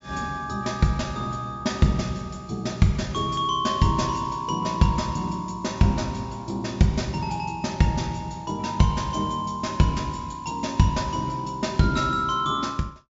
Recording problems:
treble cut off; nothing above 8 kHz

